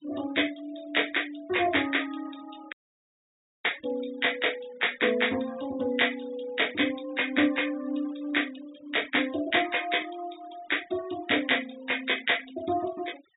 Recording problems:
treble missing; nothing above 4 kHz
noise reduction artefacts; signal-to-artefact ratio 19 dB
dropout; at 2.5 s for 1 s

